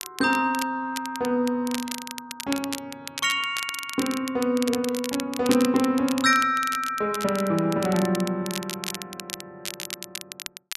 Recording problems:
crackle; vinyl, SNR 10 dB

